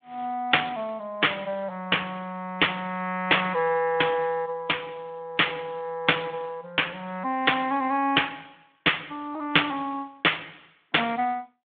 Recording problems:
telephone audio; 320 Hz to 3.5 kHz, Speex

